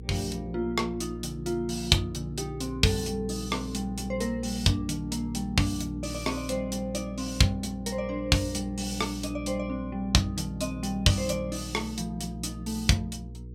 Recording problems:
hum; 60 Hz, harmonics up to 480 Hz, SNR 11 dB

